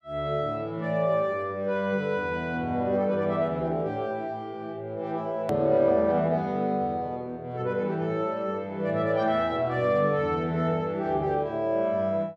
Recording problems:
edit click; at 5.5 s

